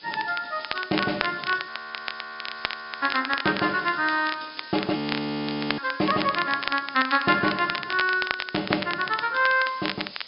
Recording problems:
low-pass filter; nothing above 5.5 kHz
hiss; SNR 19 dB
crackling; vinyl, SNR 8 dB
audio freezing; at 1.5 s for 1.5 s and at 5 s for 1 s

